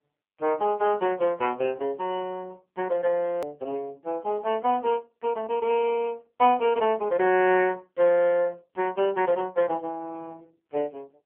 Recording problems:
telephone audio; 280 Hz to 3.1 kHz, AMR-NB
edit click; at 3.5 s

